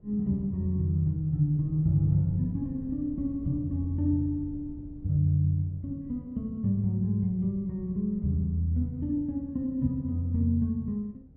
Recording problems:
wind noise; below 160 Hz, SNR 18 dB

